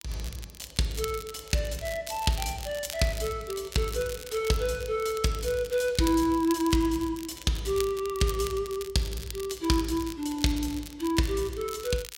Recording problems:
crackle; vinyl, SNR 13 dB

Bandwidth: 16 kHz